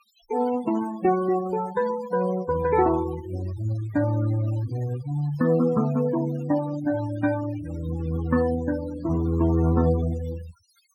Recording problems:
noise reduction artefacts; signal-to-artefact ratio 15 dB

